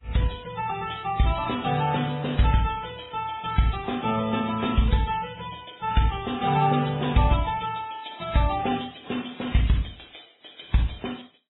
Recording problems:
lossy codec; Vorbis, then AAC, log-spectral distance 11 dB, nothing above 3.7 kHz

